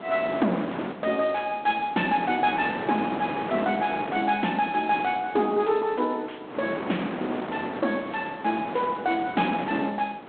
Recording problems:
telephone audio; 220 Hz to 3.7 kHz, G.726
distorted audio; soft clipping, signal-to-distortion ratio 13 dB
wind noise; below 1.1 kHz, SNR 8 dB

